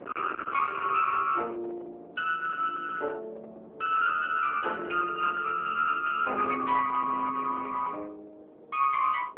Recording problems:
telephone audio; 320 Hz to 3.3 kHz, AMR-NB
distorted audio; hard clipping, signal-to-distortion ratio 13 dB
wind noise; below 1.5 kHz, SNR 15 dB

